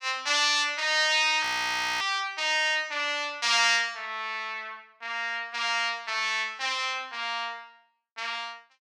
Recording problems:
audio freezing; at 1.5 s for 0.5 s

